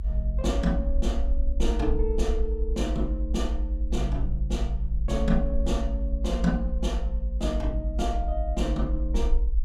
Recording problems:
rumble; below 58 Hz, SNR -2 dB

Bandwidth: 16 kHz